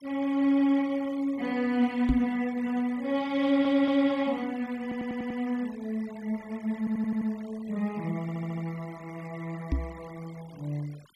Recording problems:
noise reduction artefacts; signal-to-artefact ratio 23 dB
microphone bump; at 2 s and at 9.5 s; peak +6 dB vs average level
stutter; 4 times, first at 3.5 s

